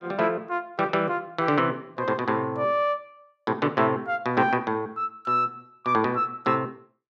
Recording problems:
none

